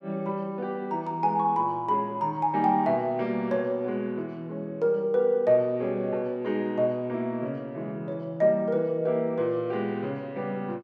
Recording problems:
none

